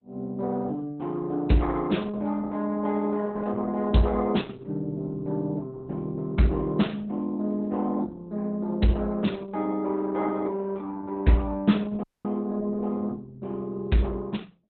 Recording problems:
lossy codec; Opus, log-spectral distance 3 dB, nothing above 4 kHz
audio cutting out; at 12 s

